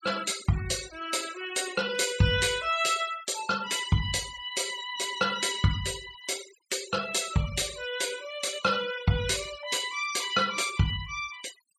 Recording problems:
denoising artefacts; signal-to-artefact ratio 14 dB

